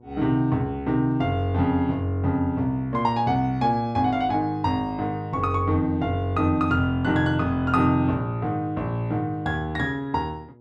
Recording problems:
hum; 60 Hz, harmonics up to 960 Hz, SNR 27 dB

